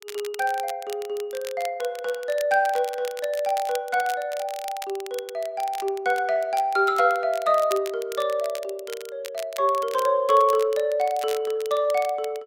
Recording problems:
crackling; vinyl, SNR 17 dB

